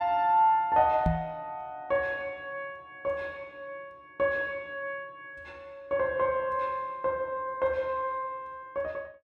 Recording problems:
knock on the microphone; at 1 s; peak +5 dB vs average level

